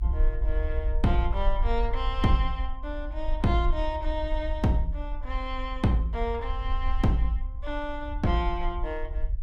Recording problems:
low-frequency rumble; below 50 Hz, SNR 3 dB

